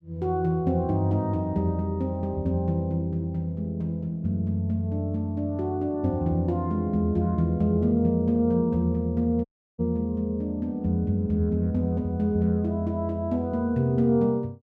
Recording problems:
audio cutting out; at 9.5 s

